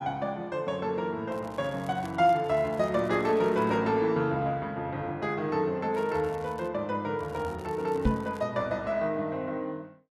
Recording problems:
crackling; from 1.5 to 4 s, at 6 s and from 7 to 8.5 s; loose cable, SNR 26 dB
knock on the microphone; at 8 s; peak +7 dB vs average level

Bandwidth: 12.5 kHz